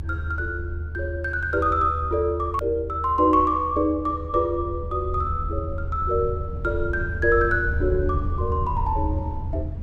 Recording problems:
low-frequency rumble; below 82 Hz, strongest tone 78 Hz, SNR 6 dB
hard cut with a click; at 2.5 s

